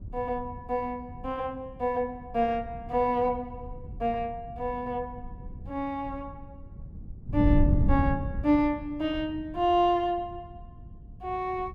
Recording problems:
wind on the microphone; below 130 Hz, SNR 6 dB

